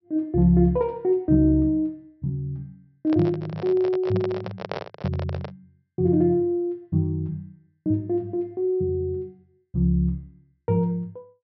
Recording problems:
treble missing; nothing above 5.7 kHz
microphone handling noise; from 3 to 5.5 s; peak -3 dB vs average level

